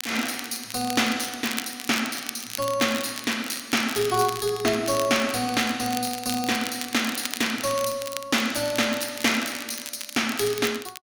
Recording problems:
crackle; vinyl, SNR 10 dB

